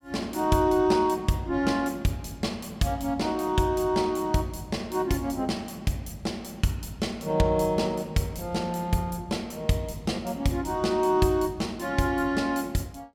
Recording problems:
none

